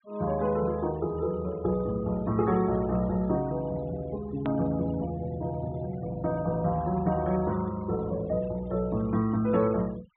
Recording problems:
treble cut off; nothing above 3.9 kHz
noise reduction artefacts; signal-to-artefact ratio 22 dB
hard cut with a click; at 4.5 s

